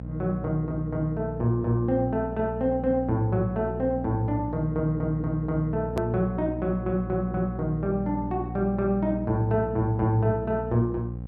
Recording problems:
mains hum; 60 Hz, harmonics up to 540 Hz, SNR 8 dB
click at an edit; at 6 s

